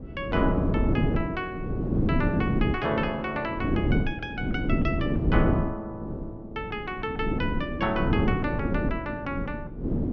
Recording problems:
wind on the microphone; below 300 Hz, SNR -3 dB

